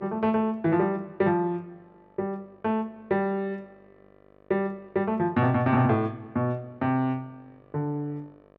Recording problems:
mains hum; 50 Hz, harmonics up to 2.5 kHz, SNR 31 dB

